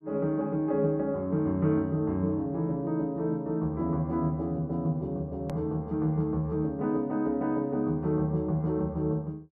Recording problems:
edit click; at 5.5 s

